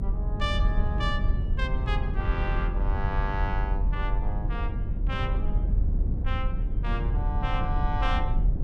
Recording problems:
hum; 60 Hz, harmonics up to 1.1 kHz, SNR 21 dB
low-frequency rumble; below 76 Hz, strongest tone 40 Hz, SNR -5 dB

